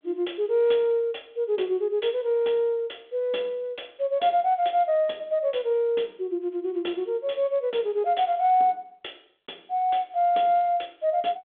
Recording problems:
telephone audio; 280 Hz to 3.5 kHz, G.726

